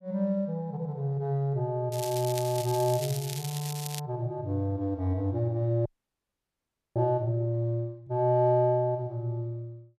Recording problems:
crackle; from 2 to 4 s; loose cable, SNR 9 dB
frozen audio; at 6 s for 1 s

